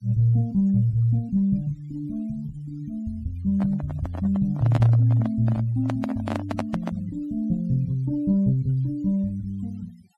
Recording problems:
denoising artefacts; signal-to-artefact ratio 27 dB
microphone handling noise; from 3.5 to 7 s; peak 0 dB vs average level

